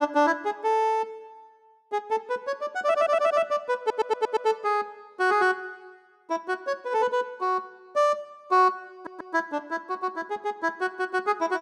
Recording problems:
stutter; at 3 s, at 4 s and at 9 s

